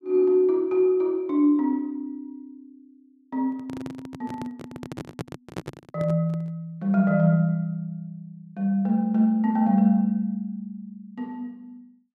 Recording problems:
handling noise; from 3.5 to 6.5 s; peak -5 dB vs average level

